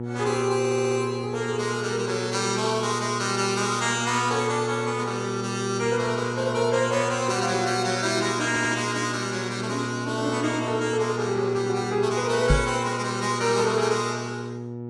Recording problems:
lossy compression; Vorbis, log-spectral distance 3 dB, nothing above 10.4 kHz
hum; 60 Hz, harmonics up to 960 Hz, SNR 7 dB
stutter; at 0.5 s and at 8.5 s
microphone thump; at 13 s; peak +7 dB vs average level

